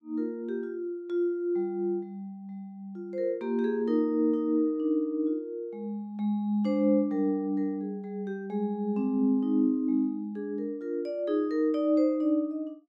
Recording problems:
none

